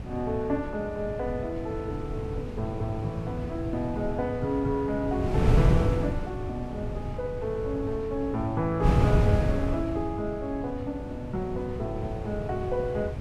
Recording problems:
wind noise; below 170 Hz, SNR 1 dB

